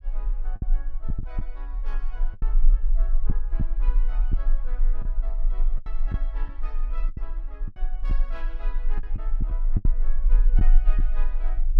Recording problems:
rumble; below 34 Hz, strongest tone 24 Hz, SNR -19 dB
lost packets; 6% of the sound replaced, filled with the last packet

